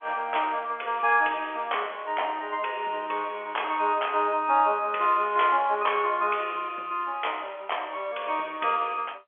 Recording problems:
phone line; 320 Hz to 3.3 kHz, G.711

